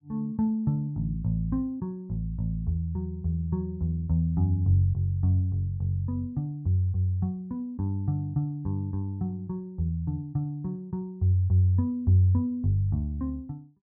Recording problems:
none

